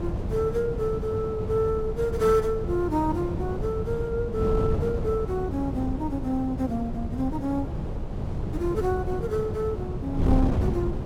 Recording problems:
wind noise; below 210 Hz, SNR 3 dB

